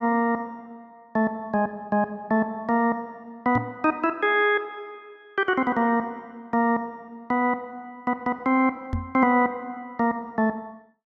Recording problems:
knock on the microphone; at 3.5 s and at 9 s; peak 0 dB vs average level

